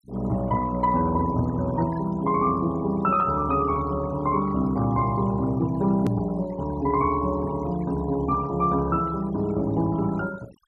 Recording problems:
noise reduction artefacts; signal-to-artefact ratio 20 dB
edit click; at 6 s

